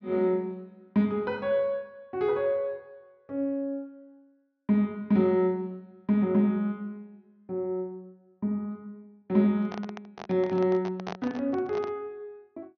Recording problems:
treble missing; nothing above 6.4 kHz
handling noise; from 9.5 to 12 s; peak -4 dB vs average level

